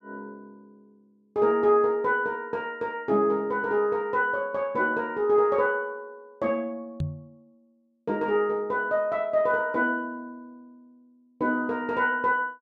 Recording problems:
microphone bump; at 7 s; peak 0 dB vs average level

